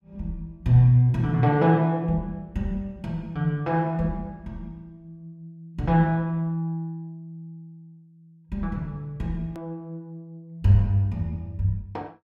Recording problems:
edit click; at 9.5 s

